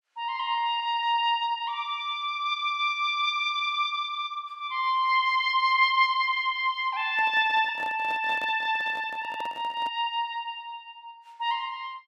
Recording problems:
microphone handling noise; from 7 to 10 s; peak -12 dB vs average level

